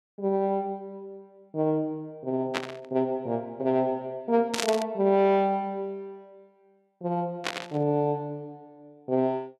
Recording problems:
static burst; at 2.5 s, at 4.5 s and at 7.5 s; peak +4 dB vs average level

